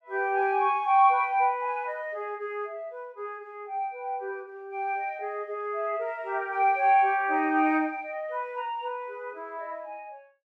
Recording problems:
none

